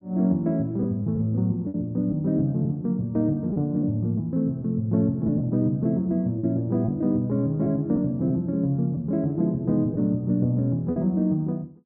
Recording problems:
lost packets; 4% of the sound replaced, filled with repeated pitch periods

